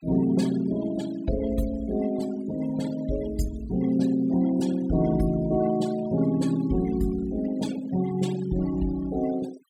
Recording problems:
denoising artefacts; signal-to-artefact ratio 19 dB

